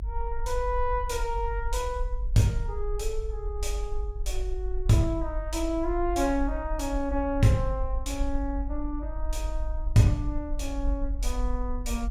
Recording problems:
rumble; below 48 Hz, SNR 5 dB

